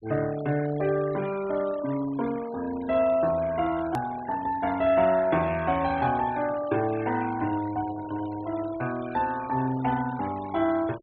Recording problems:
treble cut off; nothing above 4.2 kHz
noise reduction artefacts; signal-to-artefact ratio 18 dB
hard cut with a click; at 4 s

